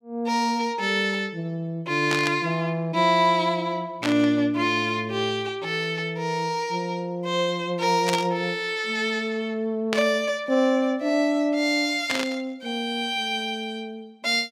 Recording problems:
static burst; 5 times, first at 2 s; peak +1 dB vs average level

